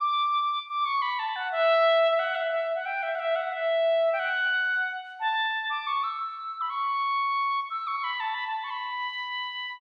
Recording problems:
none

